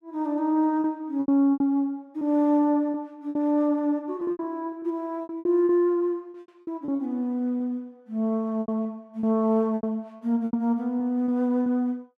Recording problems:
packet loss; 11% of the sound replaced, filled with repeated pitch periods

